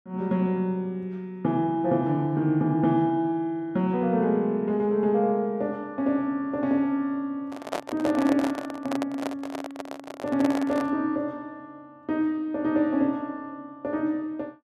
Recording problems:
handling noise; from 7.5 to 11 s; peak 0 dB vs average level

